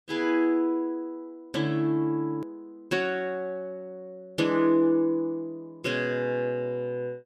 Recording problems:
edit click; at 2.5 s

